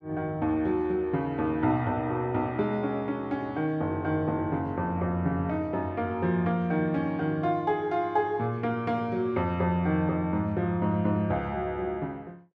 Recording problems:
none

